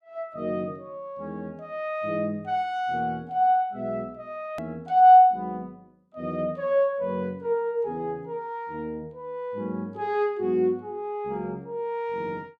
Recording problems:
click at an edit; at 4.5 s

